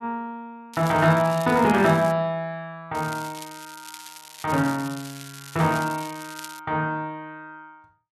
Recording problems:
crackle; from 0.5 to 2 s and from 3 to 6.5 s; loose cable, SNR 17 dB

